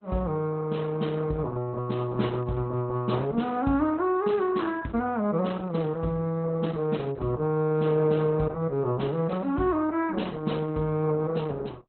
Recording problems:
lossy compression; Opus, log-spectral distance 3 dB, nothing above 4.1 kHz

